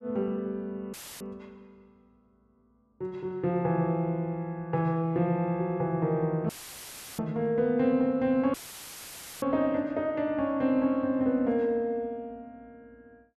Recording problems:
dropout; at 1 s, at 6.5 s for 0.5 s and at 8.5 s for 1 s; filled with static

